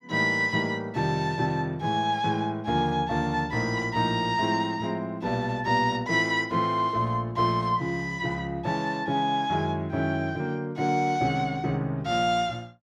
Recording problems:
none

